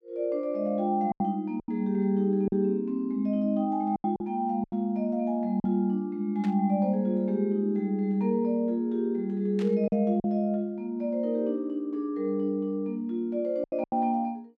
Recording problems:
packet loss; 5% of the sound replaced, filled with silence
static burst; at 6.5 s and at 9.5 s; peak -13 dB vs average level

